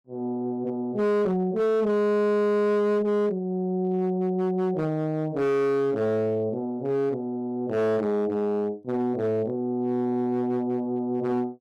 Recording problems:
distorted audio; hard clipping, signal-to-distortion ratio 11 dB

